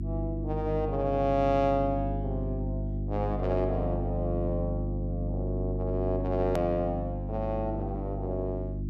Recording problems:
hum; 50 Hz, harmonics up to 350 Hz, SNR 2 dB
edit click; at 6.5 s

